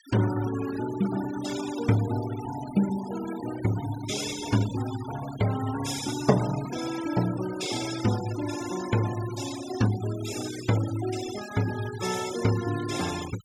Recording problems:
noise reduction artefacts; signal-to-artefact ratio 11 dB

